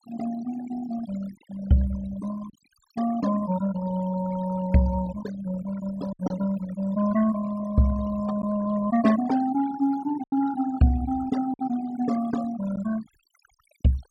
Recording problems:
denoising artefacts; signal-to-artefact ratio 14 dB
packet loss; 2% of the sound replaced, filled with silence

